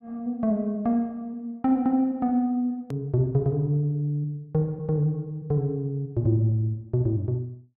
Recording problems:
click at an edit; at 3 s

